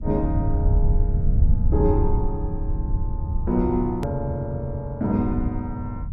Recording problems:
low-frequency rumble; below 88 Hz, SNR -1 dB
click at an edit; at 4 s

